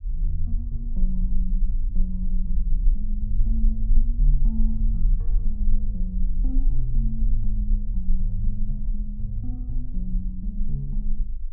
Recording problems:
low-pass filter; nothing above 5.5 kHz
low-frequency rumble; below 36 Hz, strongest tone 22 Hz, SNR -7 dB

